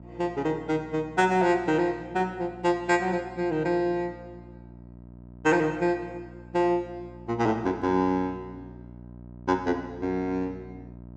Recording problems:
hum; 60 Hz, harmonics up to 960 Hz, SNR 19 dB

